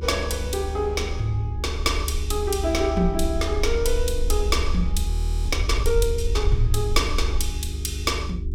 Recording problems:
hum; 50 Hz, harmonics up to 400 Hz, SNR 11 dB
rumble; below 72 Hz, SNR 2 dB
audio freezing; at 5 s

